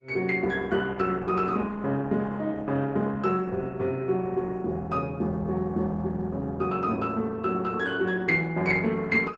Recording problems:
codec artefacts; Opus, log-spectral distance 3 dB, nothing above 7.6 kHz

